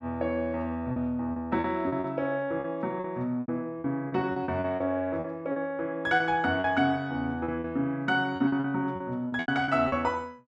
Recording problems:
packet loss; 12% of the sound replaced, filled with repeated pitch periods

